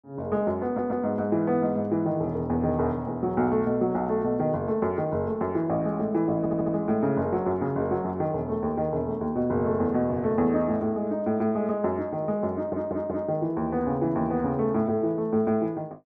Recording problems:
audio stuttering; at 0.5 s, at 6.5 s and at 13 s

